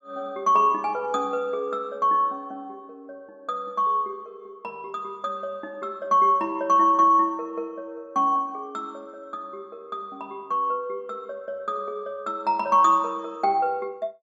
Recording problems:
none

